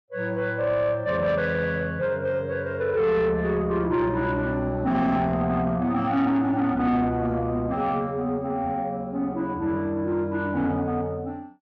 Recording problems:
distortion; soft clipping, signal-to-distortion ratio 12 dB

